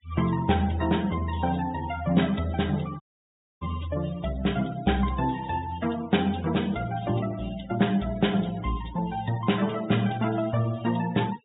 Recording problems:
treble cut off; nothing above 4 kHz
denoising artefacts; signal-to-artefact ratio 19 dB
dropout; at 3 s for 0.5 s

